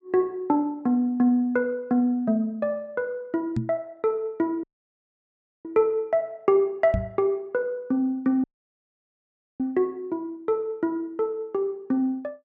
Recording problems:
microphone thump; at 3.5 s and at 7 s; peak +2 dB vs average level
dropout; at 4.5 s for 1 s and at 8.5 s for 1 s

